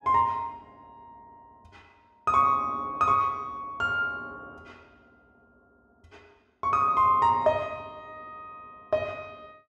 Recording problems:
none

